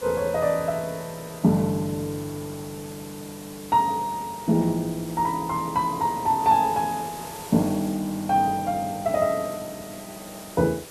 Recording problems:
background hiss; slope -3 dB per octave, SNR 16 dB

